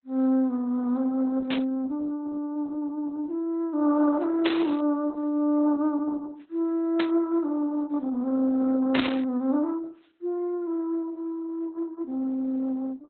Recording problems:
codec artefacts; Opus, log-spectral distance 2 dB, nothing above 3.9 kHz
static burst; 4 times, first at 1.5 s; peak +3 dB vs average level

